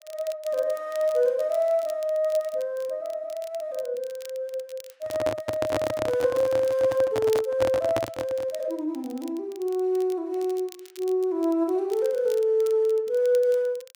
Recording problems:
crackle; vinyl, SNR 23 dB
handling noise; from 5 to 8.5 s; peak +2 dB vs average level

